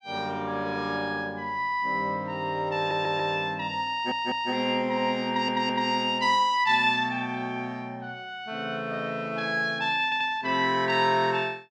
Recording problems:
stutter; 4 times, first at 3 s

